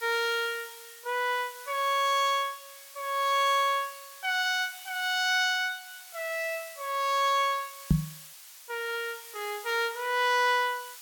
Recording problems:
background hiss; SNR 17 dB
knock on the microphone; at 8 s; peak +8 dB vs average level

